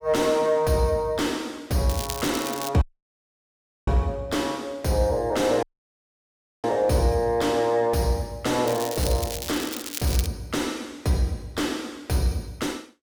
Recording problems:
distorted audio; soft clipping, signal-to-distortion ratio 10 dB
crackling; at 2 s and from 8.5 to 10 s; loose cable, SNR 8 dB
dropout; at 3 s for 1 s and at 5.5 s for 1 s

